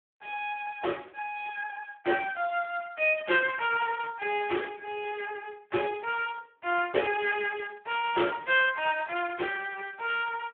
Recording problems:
phone line; 300 Hz to 3.4 kHz, Speex

